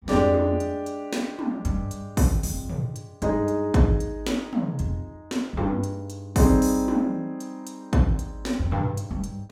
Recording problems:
none

